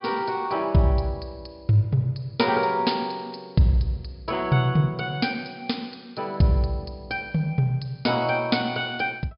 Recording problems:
treble missing; nothing above 5.5 kHz

